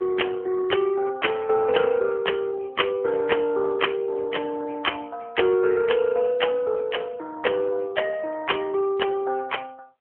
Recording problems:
telephone audio; 300 Hz to 3.2 kHz, AMR-NB

